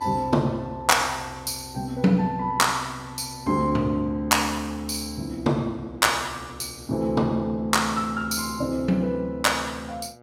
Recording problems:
electrical hum; 60 Hz, harmonics up to 2.2 kHz, SNR 26 dB

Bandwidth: 16.5 kHz